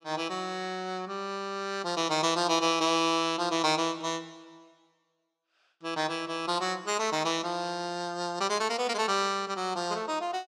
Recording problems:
none

